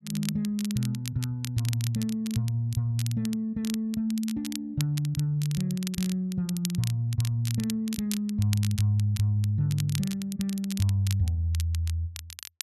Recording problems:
crackling; vinyl, SNR 12 dB

